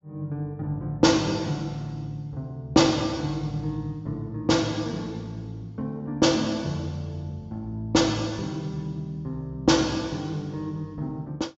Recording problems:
treble cut off; nothing above 7.4 kHz

